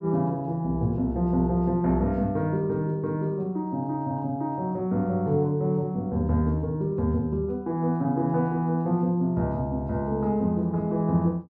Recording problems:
none

